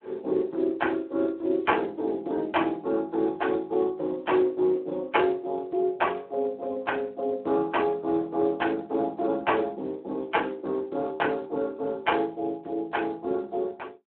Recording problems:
phone line; 240 Hz to 3.3 kHz, Speex

